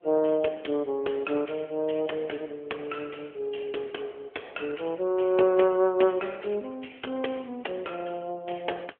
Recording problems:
telephone audio; 260 Hz to 3.3 kHz, AMR-NB

